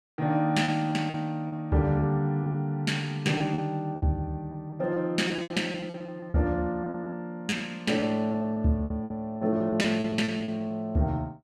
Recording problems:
packet loss; 12% of the sound replaced, filled with repeated pitch periods

